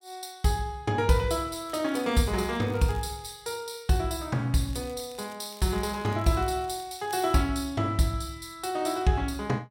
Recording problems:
crackle; from 1.5 to 3.5 s and from 4.5 to 7.5 s; loose cable, SNR 24 dB

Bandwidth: 16 kHz